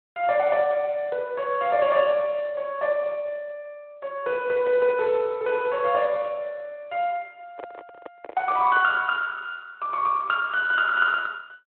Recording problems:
phone line; 240 Hz to 3.5 kHz, Speex
handling noise; from 7.5 to 9 s; peak -9 dB vs average level

